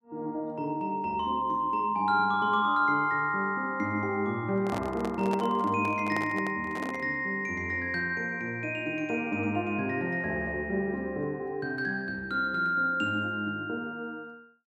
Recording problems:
handling noise; from 4.5 to 7 s; peak -3 dB vs average level

